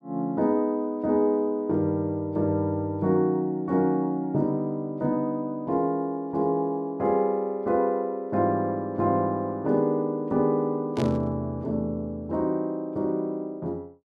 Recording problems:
burst of static; at 11 s; peak -8 dB vs average level

